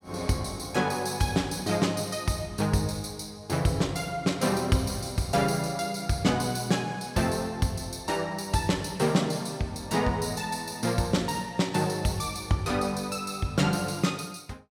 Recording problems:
none

